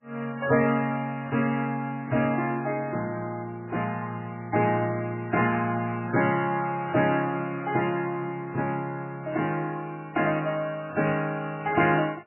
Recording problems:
lossy compression; MP3, log-spectral distance 3 dB, nothing above 2.8 kHz

